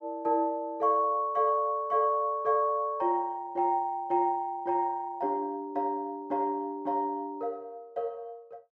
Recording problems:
none

